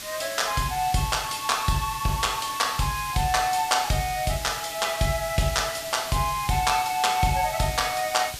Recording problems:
background hiss; SNR 10 dB

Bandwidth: 14.5 kHz